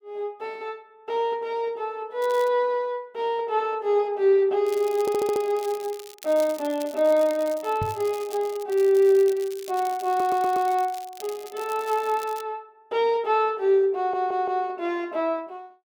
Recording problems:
crackle; at 2 s and from 4.5 to 12 s; loose cable, SNR 20 dB
audio stuttering; at 5 s, at 10 s and at 14 s
microphone bump; at 8 s; peak -3 dB vs average level

